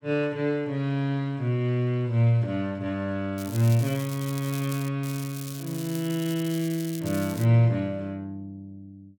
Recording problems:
crackle; from 3.5 to 5 s and from 5 to 7.5 s; loose cable, SNR 14 dB

